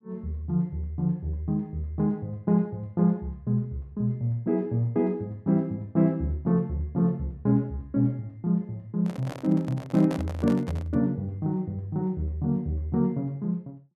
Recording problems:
microphone handling noise; from 9 to 11 s; peak -4 dB vs average level

